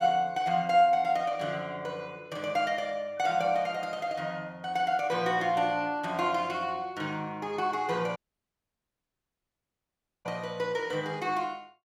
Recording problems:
dropout; at 8 s for 2 s

